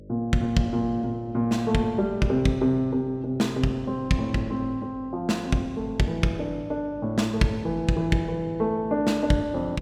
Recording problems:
electrical hum; 50 Hz, harmonics up to 600 Hz, SNR 19 dB

